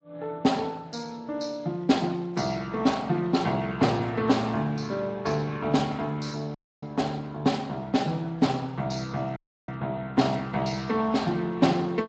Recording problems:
lossy compression; Speex, then MP3, log-spectral distance 4 dB, nothing above 7.6 kHz
audio cutting out; at 6.5 s and at 9.5 s

